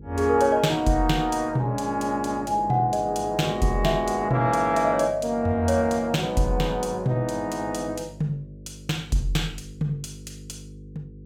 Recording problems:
hum; 50 Hz, harmonics up to 500 Hz, SNR 19 dB

